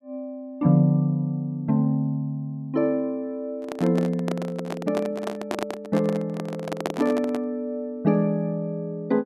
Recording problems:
microphone handling noise; from 3.5 to 7.5 s; peak +2 dB vs average level

